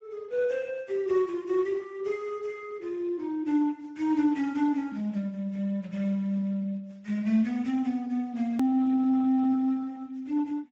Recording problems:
lossy compression; Speex, log-spectral distance 2 dB, nothing above 20.1 kHz
hard cut with a click; at 8.5 s

